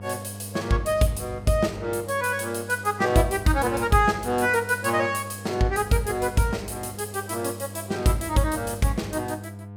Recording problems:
hum; 50 Hz, harmonics up to 1 kHz, SNR 15 dB

